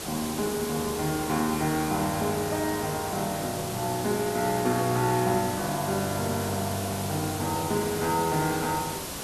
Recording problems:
hiss; slope -3 dB per octave, SNR 6 dB

